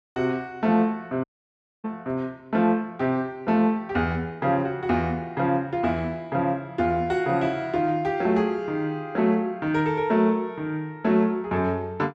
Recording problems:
audio cutting out; at 1 s for 0.5 s

